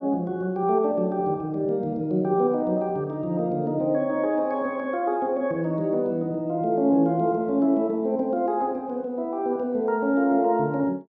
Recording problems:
none

